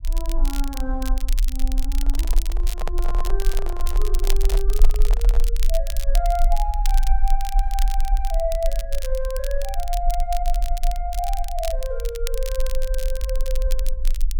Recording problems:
rumble; below 38 Hz, strongest tone 22 Hz, SNR -5 dB
crackling; vinyl, SNR 7 dB
handling noise; from 2 to 5.5 s; peak +4 dB vs average level

